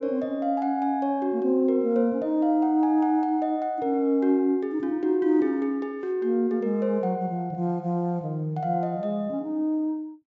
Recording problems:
treble missing; nothing above 8 kHz

